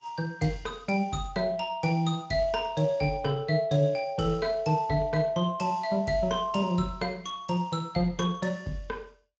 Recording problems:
lossy codec; Vorbis, then Speex, log-spectral distance 2 dB

